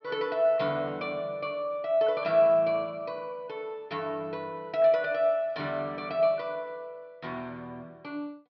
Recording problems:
treble cut off; nothing above 5.5 kHz

